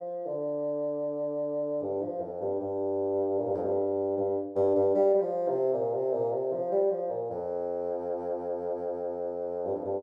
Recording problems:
none

